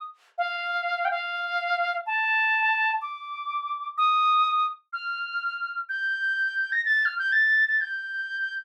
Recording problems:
none

